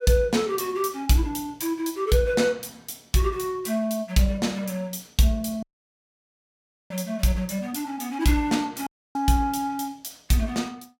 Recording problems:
dropout; at 5.5 s for 1.5 s and at 9 s

